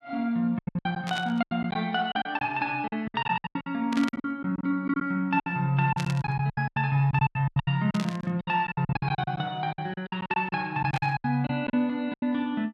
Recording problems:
lost packets; 18% of the sound replaced, filled with silence
burst of static; 5 times, first at 1 s; peak -4 dB vs average level

